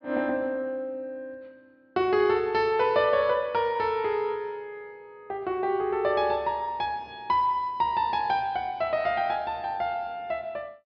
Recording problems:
treble cut off; nothing above 5.5 kHz

